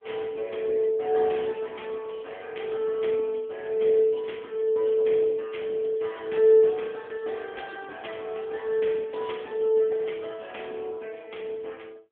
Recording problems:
telephone audio; 240 Hz to 3.4 kHz, AMR-NB

